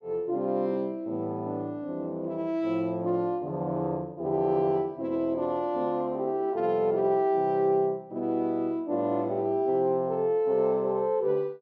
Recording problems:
none

